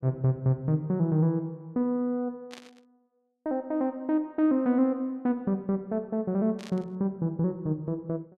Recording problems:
burst of static; at 2.5 s and at 6.5 s; peak -12 dB vs average level

